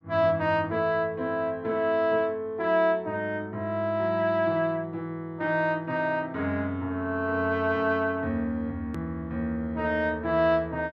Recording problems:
edit click; at 9 s

